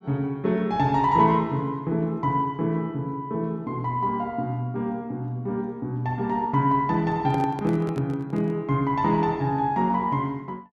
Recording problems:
handling noise; from 7 to 8.5 s; peak -7 dB vs average level

